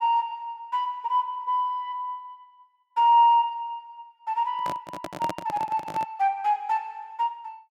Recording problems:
handling noise; from 4.5 to 6 s; peak -2 dB vs average level

